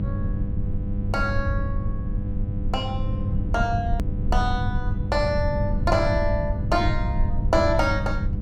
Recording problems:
electrical hum; 50 Hz, harmonics up to 500 Hz, SNR 6 dB
rumble; below 100 Hz, SNR 2 dB
click at an edit; at 4 s

